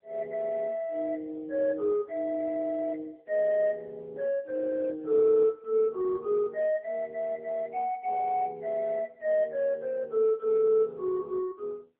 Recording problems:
telephone audio; 260 Hz to 2.2 kHz, AMR-NB

